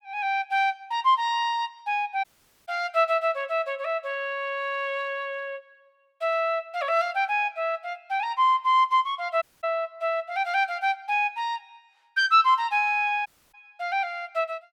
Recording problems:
audio cutting out; at 2 s, at 9.5 s and at 13 s

